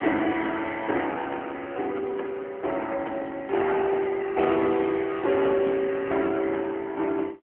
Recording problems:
phone line; 240 Hz to 3.3 kHz, AMR-NB

